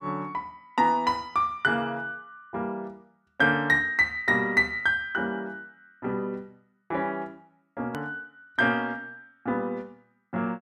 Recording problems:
hard cut with a click; at 8 s

